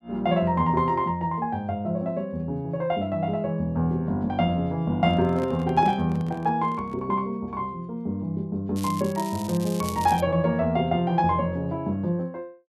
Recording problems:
handling noise; from 5 to 7 s; peak -7 dB vs average level
crackle; from 9 to 10 s; loose cable, SNR 15 dB

